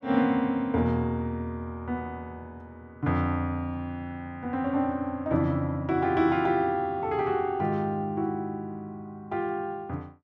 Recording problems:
none

